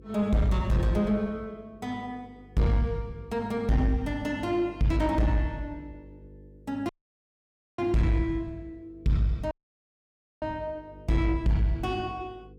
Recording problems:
distortion; soft clipping, signal-to-distortion ratio 10 dB
hum; 50 Hz, harmonics up to 500 Hz, SNR 23 dB
dropout; at 7 s for 1 s and at 9.5 s for 1 s

